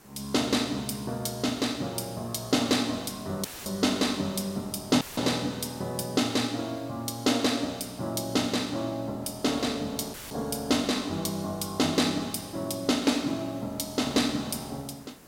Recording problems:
background hiss; SNR 24 dB
dropout; at 3.5 s, at 5 s and at 10 s; filled with static

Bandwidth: 16.5 kHz